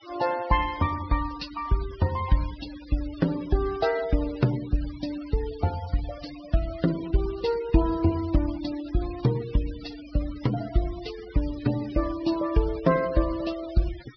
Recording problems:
treble missing; nothing above 5.5 kHz
noise reduction artefacts; signal-to-artefact ratio 17 dB

